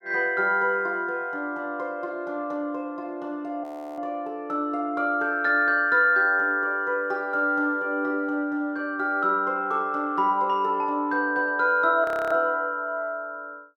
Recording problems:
audio freezing; at 3.5 s and at 12 s

